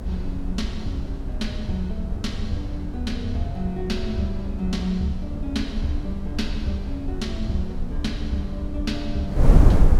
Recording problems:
low-frequency rumble; below 68 Hz, SNR 7 dB
wind noise; below 90 Hz, SNR -1 dB

